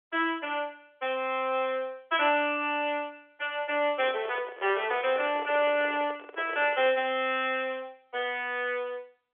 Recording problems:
phone line; 340 Hz to 3.4 kHz, G.711
microphone handling noise; from 4 to 7 s; peak -7 dB vs average level

